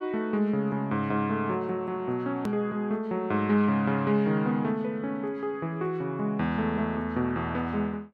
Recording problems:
hard cut with a click; at 2.5 s

